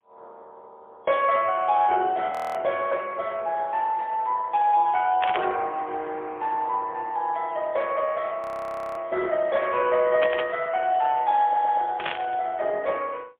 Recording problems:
telephone audio; 320 Hz to 3.4 kHz, AMR-NB, then MP3
audio freezing; at 2.5 s and at 8.5 s for 0.5 s
burst of static; at 5 s, at 10 s and at 12 s; peak +1 dB vs average level
audio stuttering; at 11 s

